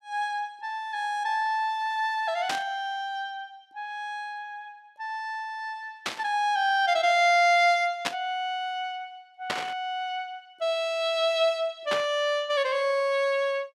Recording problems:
static burst; 5 times, first at 2.5 s; peak +3 dB vs average level

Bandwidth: 15 kHz